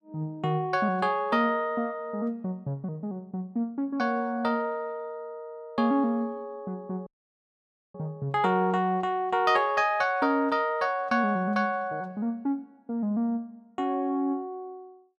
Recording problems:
dropout; at 7 s for 1 s

